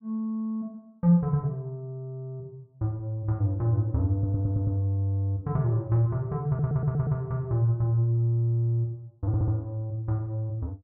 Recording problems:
stutter; at 4 s, at 6.5 s and at 9.5 s

